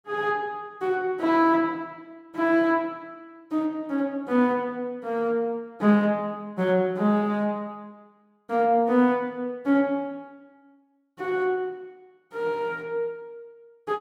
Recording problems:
none

